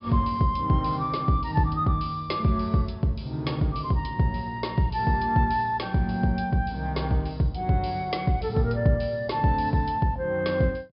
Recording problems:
low-pass filter; nothing above 5.2 kHz

